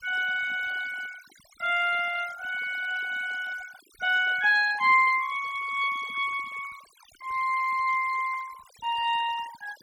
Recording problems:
denoising artefacts; signal-to-artefact ratio 18 dB

